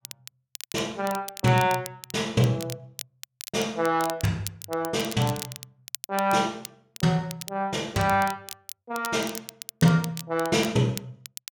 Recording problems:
crackle; vinyl, SNR 14 dB

